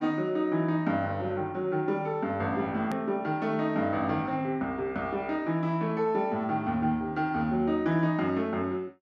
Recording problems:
edit click; at 3 s

